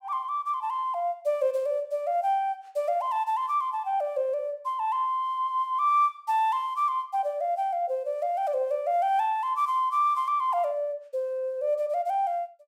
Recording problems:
none

